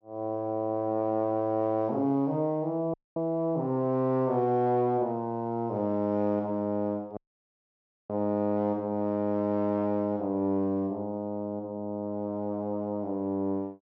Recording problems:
dropout; at 3 s and at 7 s for 1 s

